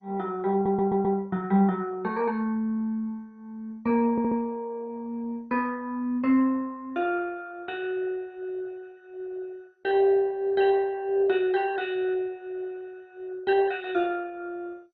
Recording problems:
lossy codec; MP2, log-spectral distance 2 dB
stutter; at 0.5 s and at 4 s

